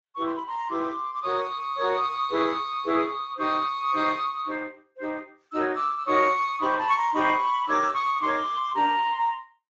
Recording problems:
lossy codec; Speex, log-spectral distance 4 dB

